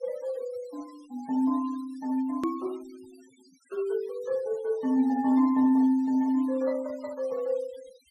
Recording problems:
denoising artefacts; signal-to-artefact ratio 26 dB
click at an edit; at 2.5 s

